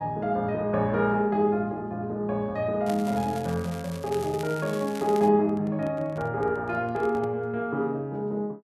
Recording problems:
crackling; from 3 to 5.5 s; loose cable, SNR 18 dB
handling noise; from 5.5 to 7.5 s; peak -9 dB vs average level

